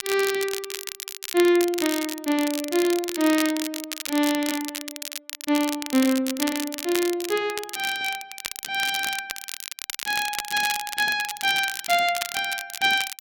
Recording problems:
crackle; vinyl, SNR 7 dB

